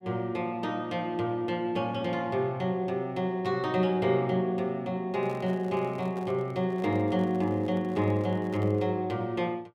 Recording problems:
handling noise; from 5 to 9 s; peak -11 dB vs average level

